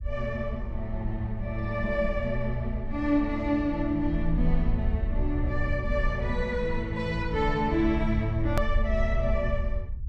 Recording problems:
rumble; below 66 Hz, SNR 4 dB
edit click; at 8.5 s

